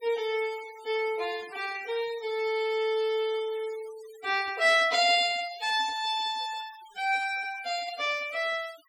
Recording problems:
noise reduction artefacts; signal-to-artefact ratio 19 dB

